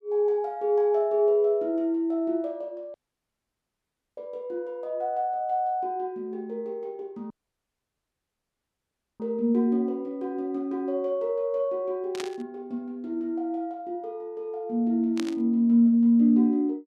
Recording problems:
dropout; at 3 s for 1 s and at 7.5 s for 2 s
static burst; at 12 s and at 15 s; peak -5 dB vs average level

